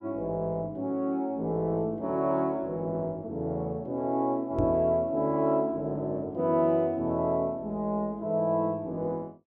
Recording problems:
microphone thump; at 4.5 s; peak +3 dB vs average level

